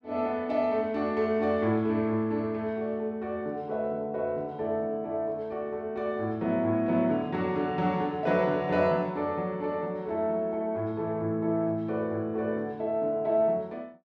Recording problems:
none

